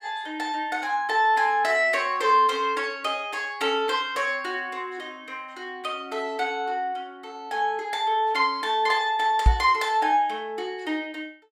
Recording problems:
microphone thump; at 9.5 s; peak +9 dB vs average level

